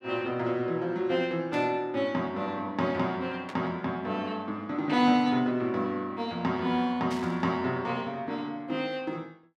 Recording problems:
static burst; at 1.5 s, at 3.5 s and at 7 s; peak -9 dB vs average level

